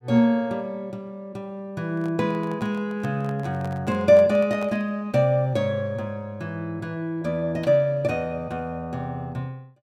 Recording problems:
microphone handling noise; from 2 to 5 s; peak -10 dB vs average level

